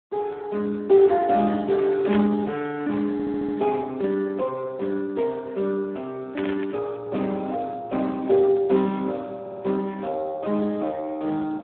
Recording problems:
phone line; 260 Hz to 2.7 kHz, Speex
static burst; at 2 s and at 6.5 s; peak -5 dB vs average level
stutter; at 3 s and at 9.5 s

